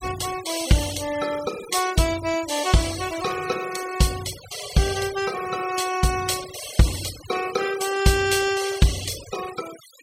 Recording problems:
denoising artefacts; signal-to-artefact ratio 12 dB

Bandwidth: 16 kHz